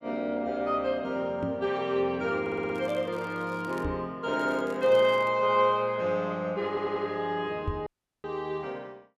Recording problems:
knock on the microphone; at 1.5 s, at 4 s and at 7.5 s; peak 0 dB vs average level
stutter; at 2.5 s and at 6.5 s
crackle; from 2.5 to 4 s and at 4.5 s; loose cable, SNR 27 dB
dropout; at 8 s

